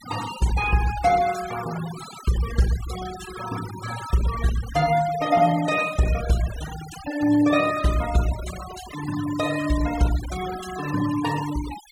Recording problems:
denoising artefacts; signal-to-artefact ratio 12 dB

